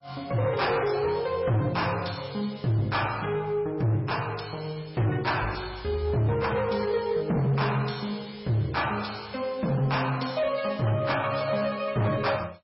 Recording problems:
codec artefacts; MP3, log-spectral distance 5 dB, nothing above 5.3 kHz
distortion; hard clipping, uneven, signal-to-distortion ratio 10 dB

